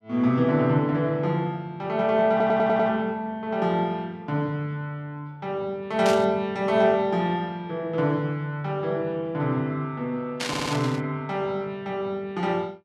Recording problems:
stutter; at 2.5 s and at 10 s
static burst; at 6 s and at 10 s; peak 0 dB vs average level

